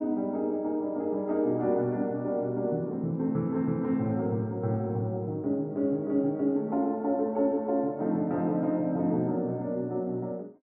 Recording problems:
none

